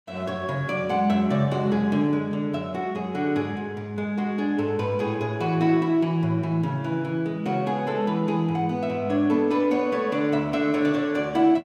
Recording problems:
none

